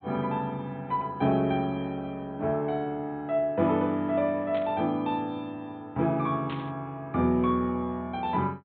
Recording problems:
low-pass filter; nothing above 4 kHz
burst of static; at 4.5 s and at 6.5 s; peak -9 dB vs average level

